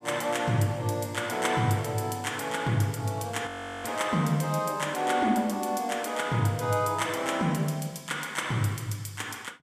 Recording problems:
audio freezing; at 3.5 s

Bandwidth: 15 kHz